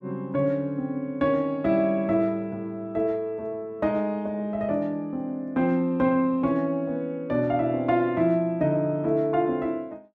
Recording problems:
none

